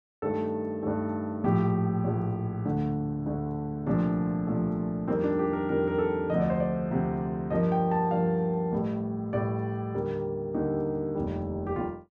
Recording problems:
none

